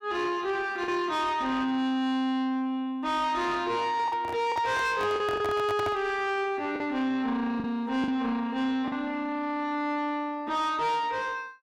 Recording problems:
distorted audio; soft clipping, signal-to-distortion ratio 12 dB
lost packets; 3% of the sound replaced, filled with the last packet
handling noise; from 4 to 6 s; peak -1 dB vs average level

